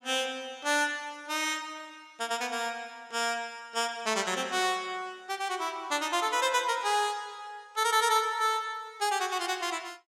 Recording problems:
none

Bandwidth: 17 kHz